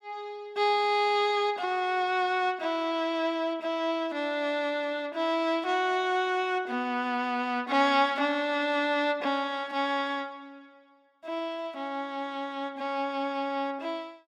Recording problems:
none

